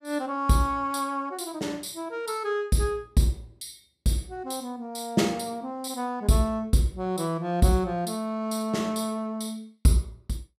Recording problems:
none

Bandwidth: 14.5 kHz